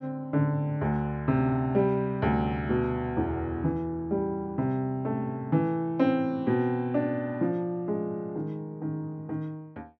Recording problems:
none

